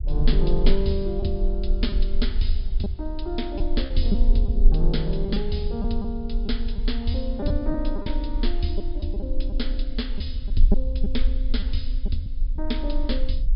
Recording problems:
treble cut off; nothing above 5.5 kHz
rumble; below 40 Hz, strongest tone 18 Hz, SNR -2 dB
packet loss; 5% of the sound replaced, filled with repeated pitch periods

